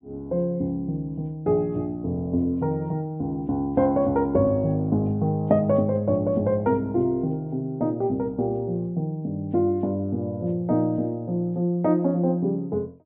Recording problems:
treble cut off; nothing above 4 kHz

